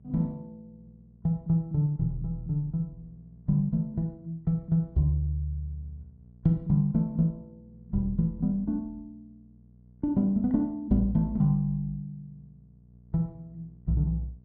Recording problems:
hum; 60 Hz, harmonics up to 480 Hz, SNR 26 dB

